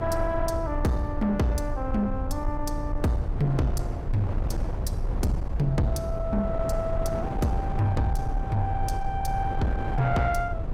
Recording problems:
distortion; soft clipping, signal-to-distortion ratio 11 dB
low-frequency rumble; below 84 Hz, SNR 5 dB
wind noise; below 550 Hz, SNR 8 dB

